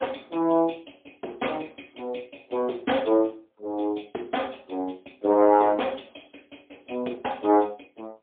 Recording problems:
phone line; 260 Hz to 3.5 kHz, AMR-NB, then MP3

